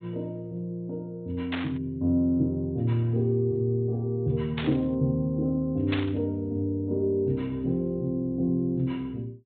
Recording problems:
treble missing; nothing above 4 kHz
static burst; at 1.5 s, at 4.5 s and at 6 s; peak +1 dB vs average level

